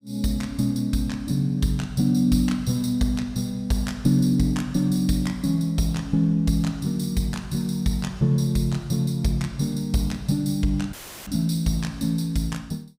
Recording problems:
dropout; at 11 s; filled with static

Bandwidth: 15.5 kHz